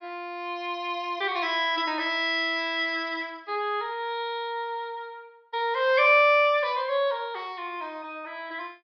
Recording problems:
low-pass filter; nothing above 5.5 kHz

